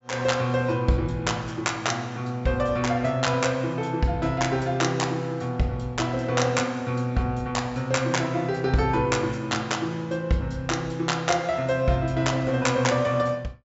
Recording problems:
treble missing; nothing above 8 kHz

